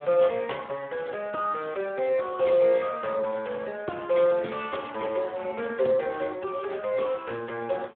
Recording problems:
telephone audio; 220 Hz to 3.3 kHz, Speex

